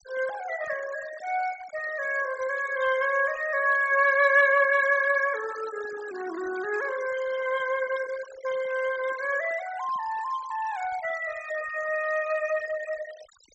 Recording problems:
low-pass filter; nothing above 7.7 kHz
noise reduction artefacts; signal-to-artefact ratio 16 dB

